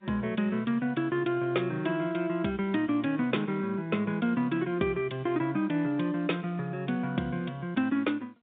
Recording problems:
phone line; 170 Hz to 3.7 kHz, G.711

